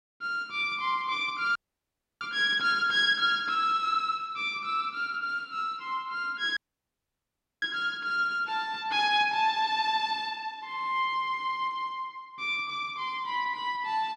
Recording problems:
audio cutting out; at 1.5 s for 0.5 s and at 6.5 s for 1 s

